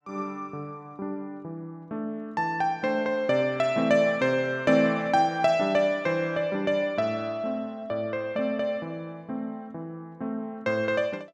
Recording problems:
none

